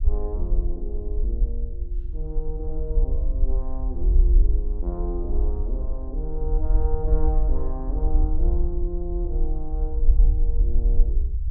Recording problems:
rumble; below 48 Hz, SNR -10 dB

